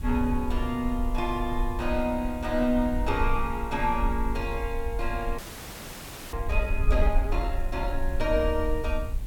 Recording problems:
hiss; slope -3 dB per octave, SNR 22 dB
wind on the microphone; below 56 Hz, SNR 3 dB
frozen audio; at 5.5 s for 1 s

